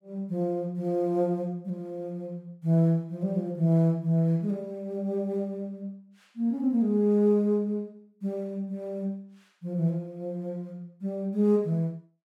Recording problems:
none

